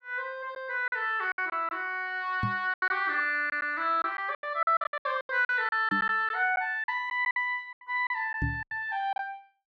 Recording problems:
lost packets; 13% of the sound replaced, filled with silence
knock on the microphone; at 2.5 s, at 6 s and at 8.5 s; peak +1 dB vs average level

